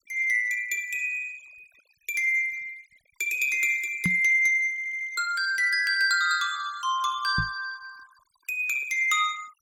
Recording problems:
noise reduction artefacts; signal-to-artefact ratio 25 dB
microphone bump; at 4 s and at 7.5 s; peak 0 dB vs average level
stutter; at 4.5 s

